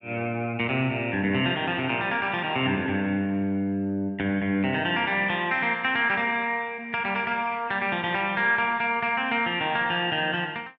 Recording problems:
none

